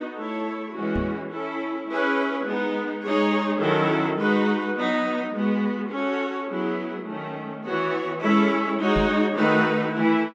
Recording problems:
knock on the microphone; at 1 s and at 9 s; peak -1 dB vs average level

